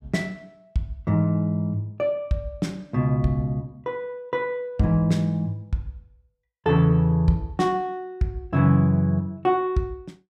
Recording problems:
none

